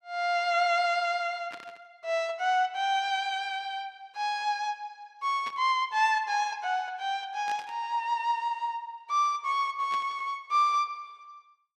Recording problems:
static burst; 4 times, first at 1.5 s; peak -10 dB vs average level

